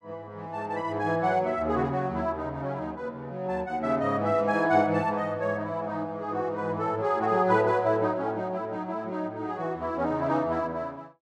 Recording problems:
none

